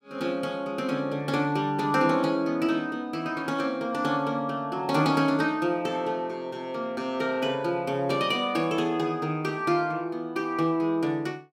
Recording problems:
none

